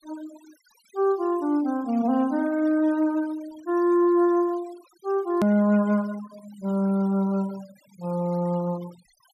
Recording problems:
denoising artefacts; signal-to-artefact ratio 25 dB
click at an edit; at 5.5 s

